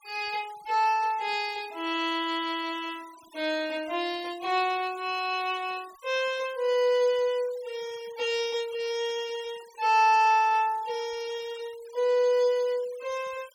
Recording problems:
denoising artefacts; signal-to-artefact ratio 22 dB

